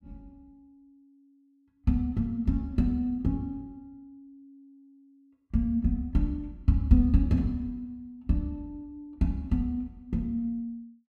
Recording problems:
none

